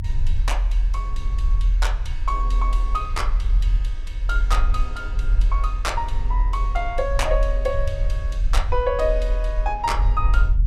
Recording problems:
low-frequency rumble; below 44 Hz, strongest tone 40 Hz, SNR -3 dB

